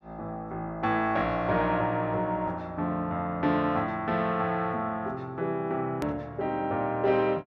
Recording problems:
click at an edit; at 6 s

